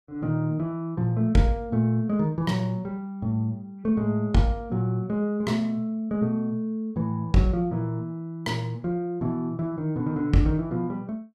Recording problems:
none

